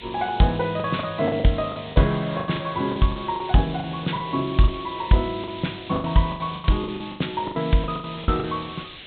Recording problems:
treble missing; nothing above 4 kHz
background hiss; SNR 15 dB
lost packets; 15% of the sound replaced, filled with the last packet

